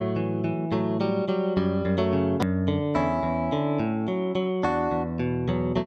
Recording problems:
hard cut with a click; at 2.5 s

